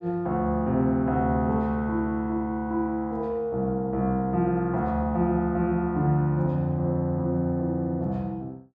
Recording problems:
none

